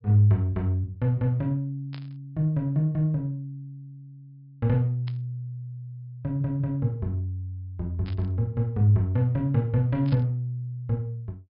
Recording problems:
treble missing; nothing above 5.5 kHz
burst of static; 4 times, first at 2 s; peak -14 dB vs average level

